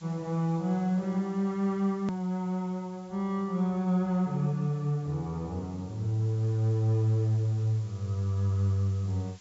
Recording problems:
treble cut off; nothing above 8 kHz
background hiss; slope +1 dB per octave, SNR 28 dB
hard cut with a click; at 2 s

